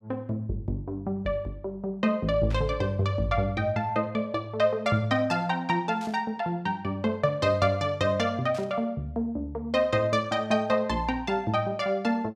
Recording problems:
burst of static; at 2.5 s, at 6 s and at 8.5 s; peak -12 dB vs average level

